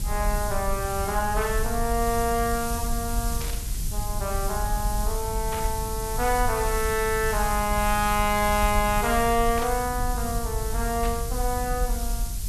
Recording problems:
hiss; SNR 8 dB
low-frequency rumble; below 68 Hz, SNR 5 dB
static burst; 4 times, first at 3.5 s; peak -6 dB vs average level

